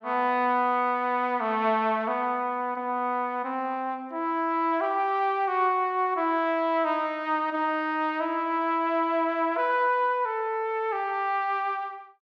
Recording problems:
none

